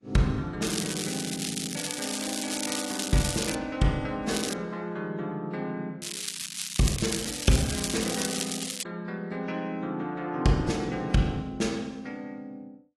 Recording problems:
lossy codec; AAC, log-spectral distance 8 dB
crackling; from 0.5 to 3.5 s, at 4.5 s and from 6 to 9 s; loose cable, SNR 2 dB

